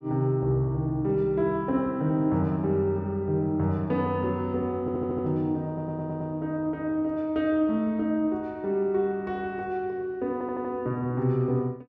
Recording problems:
stutter; at 5 s, at 5.5 s and at 10 s

